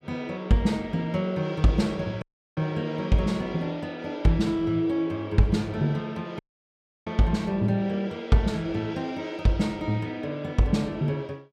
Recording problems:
audio cutting out; at 2 s and at 6.5 s for 0.5 s

